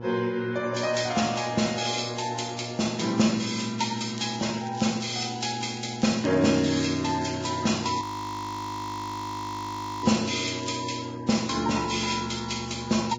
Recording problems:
codec artefacts; Vorbis, log-spectral distance 7 dB, nothing above 18.9 kHz
hum; 60 Hz, harmonics up to 1.4 kHz, SNR 12 dB
crackling; from 4 to 6 s and from 6.5 to 11 s; loose cable, SNR 19 dB
audio freezing; at 8 s for 2 s

